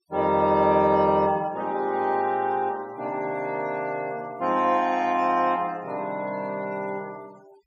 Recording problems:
noise reduction artefacts; signal-to-artefact ratio 24 dB

